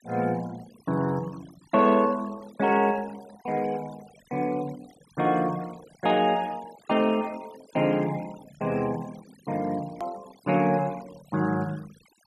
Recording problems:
denoising artefacts; signal-to-artefact ratio 21 dB
hard cut with a click; at 10 s

